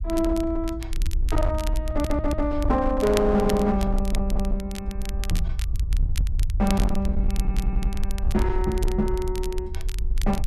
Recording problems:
distorted audio; hard clipping, uneven, signal-to-distortion ratio 12 dB
rumble; below 60 Hz, SNR 2 dB
crackling; vinyl, SNR 15 dB
stutter; at 2 s, at 4 s and at 7.5 s
microphone thump; at 5.5 s; peak +3 dB vs average level

